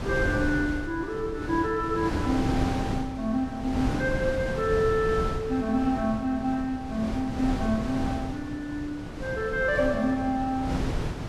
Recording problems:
wind noise; below 420 Hz, SNR 5 dB

